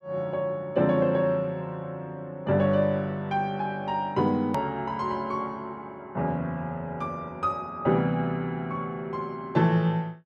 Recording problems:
click at an edit; at 4.5 s

